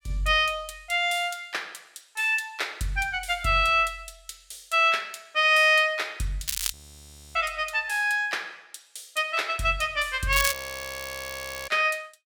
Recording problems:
crackle; at 6.5 s and at 10 s; loose cable, SNR 7 dB
frozen audio; at 6.5 s for 0.5 s and at 11 s for 1 s

